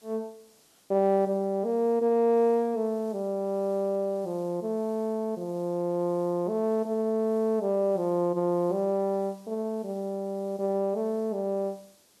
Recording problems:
background hiss; SNR 30 dB

